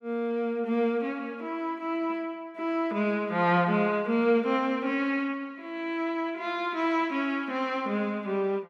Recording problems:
none

